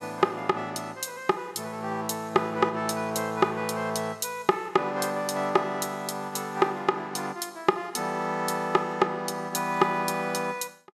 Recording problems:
none

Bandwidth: 15 kHz